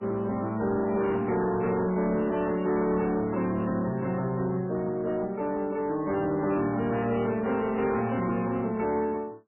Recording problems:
codec artefacts; MP3, log-spectral distance 3 dB, nothing above 2.8 kHz
distortion; soft clipping, signal-to-distortion ratio 11 dB

